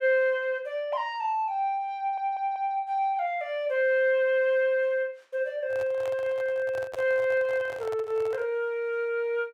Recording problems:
stutter; at 2 s
microphone handling noise; from 5.5 to 8.5 s; peak -8 dB vs average level

